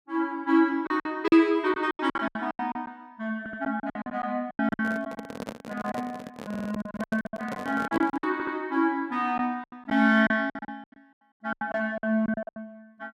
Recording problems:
lost packets; 17% of the sound replaced, filled with silence
stutter; at 3.5 s, at 6.5 s and at 8.5 s
handling noise; from 4.5 to 8.5 s; peak -2 dB vs average level

